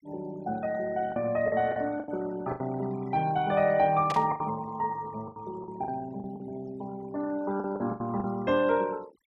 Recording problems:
denoising artefacts; signal-to-artefact ratio 22 dB
lost packets; 9% of the sound replaced, filled with the last packet
static burst; at 4 s; peak -3 dB vs average level

